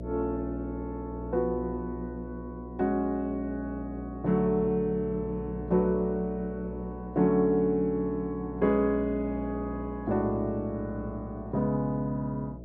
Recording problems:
mains hum; 60 Hz, harmonics up to 660 Hz, SNR 11 dB

